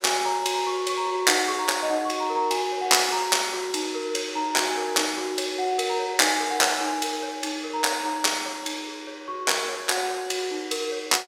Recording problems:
none

